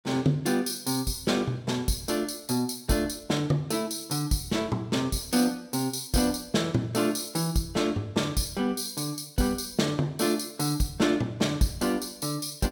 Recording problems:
none

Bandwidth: 17 kHz